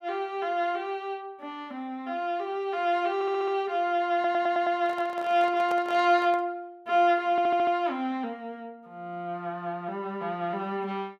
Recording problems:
stutter; at 3 s, at 4 s and at 7.5 s
handling noise; from 4 to 6.5 s; peak -7 dB vs average level

